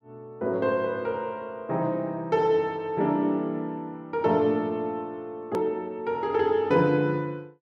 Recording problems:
hard cut with a click; at 5.5 s

